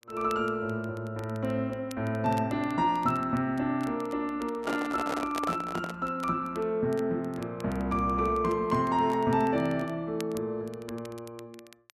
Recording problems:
crackle; vinyl, SNR 23 dB
handling noise; from 4.5 to 6 s; peak 0 dB vs average level

